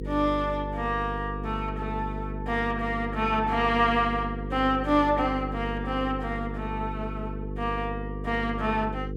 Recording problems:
electrical hum; 50 Hz, harmonics up to 500 Hz, SNR 7 dB

